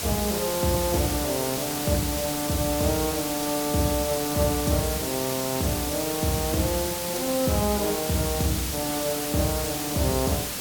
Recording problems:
hiss; slope -1 dB per octave, SNR 2 dB

